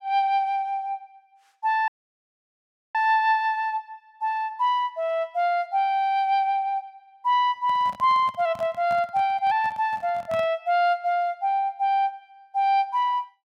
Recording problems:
audio cutting out; at 2 s for 1 s
microphone handling noise; from 7.5 to 11 s; peak -11 dB vs average level

